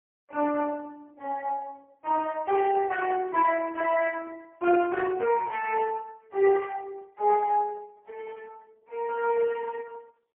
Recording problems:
telephone audio; 320 Hz to 3.1 kHz, AMR-NB, then MP3

